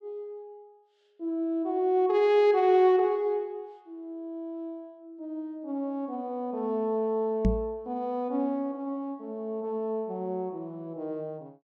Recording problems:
microphone bump; at 7.5 s; peak +6 dB vs average level

